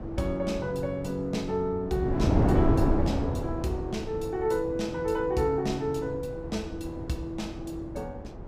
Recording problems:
wind noise; below 370 Hz, SNR 2 dB

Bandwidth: 15.5 kHz